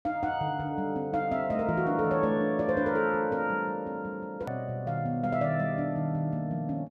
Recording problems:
click at an edit; at 4.5 s

